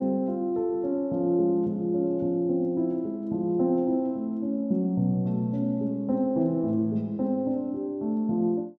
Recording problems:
none

